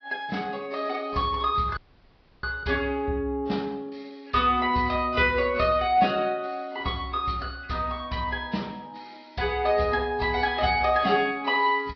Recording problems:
low-pass filter; nothing above 5.5 kHz
lossy compression; AAC, log-spectral distance 3 dB
audio cutting out; at 2 s for 0.5 s

